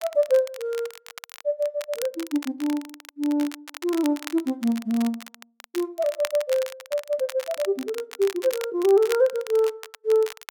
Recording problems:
crackle; vinyl, SNR 15 dB

